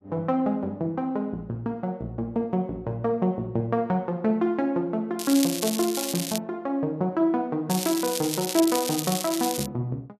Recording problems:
crackle; from 5 to 6.5 s and from 7.5 to 9.5 s; loose cable, SNR 4 dB

